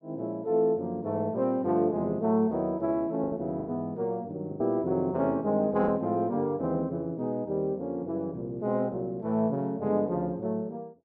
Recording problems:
packet loss; 3% of the sound replaced, filled with the last packet

